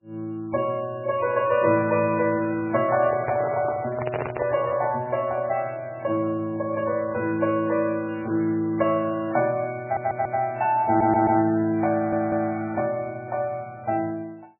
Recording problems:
codec artefacts; MP3, log-spectral distance 3 dB, nothing above 2.5 kHz
handling noise; from 3 to 5 s; peak -1 dB vs average level
stutter; at 10 s, at 11 s and at 12 s

